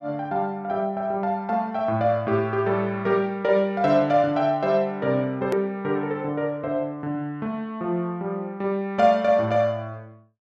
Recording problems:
hard cut with a click; at 5.5 s

